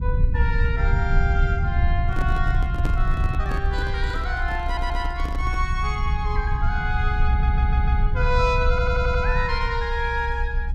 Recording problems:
rumble; below 76 Hz, SNR -2 dB
microphone handling noise; from 2 to 5.5 s; peak +1 dB vs average level
audio stuttering; at 4.5 s, at 7.5 s and at 8.5 s

